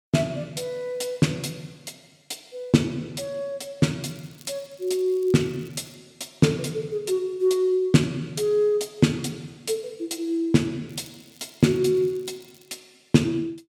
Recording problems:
crackle; from 4 to 6 s and from 11 to 13 s; loose cable, SNR 28 dB

